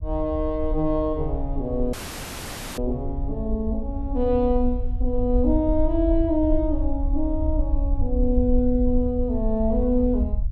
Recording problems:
low-frequency rumble; below 58 Hz, SNR 4 dB
audio cutting out; at 2 s for 1 s

